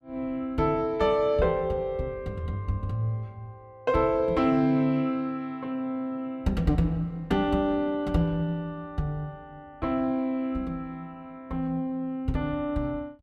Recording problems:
none

